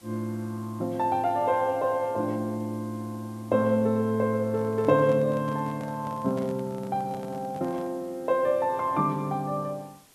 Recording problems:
hiss; slope -2 dB per octave, SNR 27 dB
handling noise; from 4.5 to 8 s; peak -9 dB vs average level

